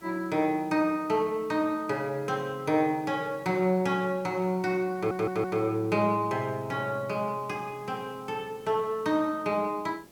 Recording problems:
background hiss; SNR 25 dB
stutter; at 5 s

